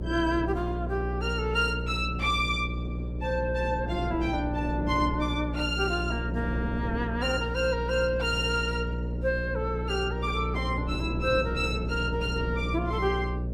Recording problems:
electrical hum; 60 Hz, harmonics up to 600 Hz, SNR 4 dB
wind noise; below 380 Hz, SNR 12 dB

